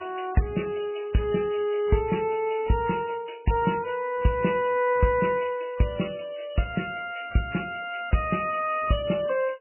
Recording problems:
codec artefacts; MP3, log-spectral distance 6 dB, nothing above 2.9 kHz

